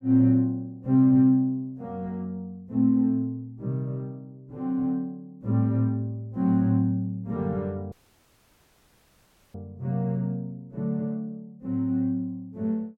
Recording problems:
dropout; at 8 s for 1.5 s

